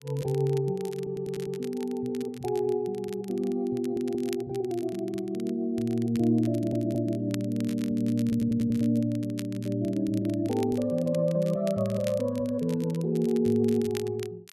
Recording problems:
crackle; vinyl, SNR 20 dB
audio stuttering; 4 times, first at 1 s

